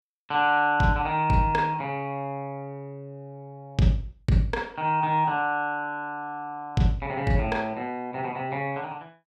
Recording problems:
none

